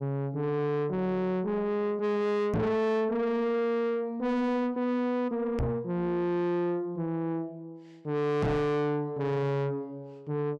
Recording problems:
distorted audio; soft clipping, signal-to-distortion ratio 6 dB
knock on the microphone; at 2.5 s, at 5.5 s and at 8.5 s; peak +6 dB vs average level

